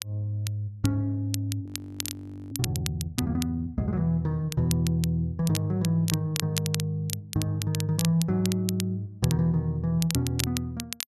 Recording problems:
crackling; vinyl, SNR 8 dB
audio freezing; at 1.5 s for 1 s

